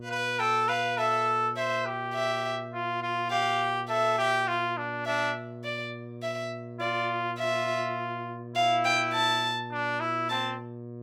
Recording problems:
mains hum; 60 Hz, harmonics up to 1.1 kHz, SNR 13 dB

